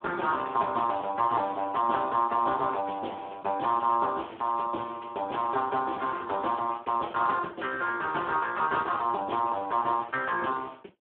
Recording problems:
telephone audio; 280 Hz to 2.8 kHz, Speex

